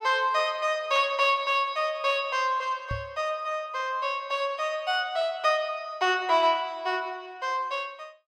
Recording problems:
microphone bump; at 3 s; peak -4 dB vs average level

